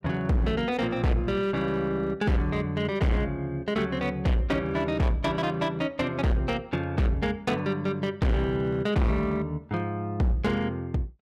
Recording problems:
distortion; hard clipping, uneven, signal-to-distortion ratio 7 dB

